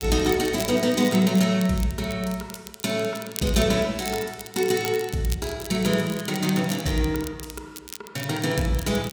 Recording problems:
crackling; vinyl, SNR 14 dB

